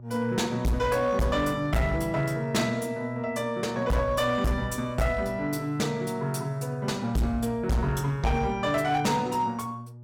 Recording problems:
distortion; hard clipping, uneven, signal-to-distortion ratio 6 dB
hum; 60 Hz, harmonics up to 600 Hz, SNR 17 dB

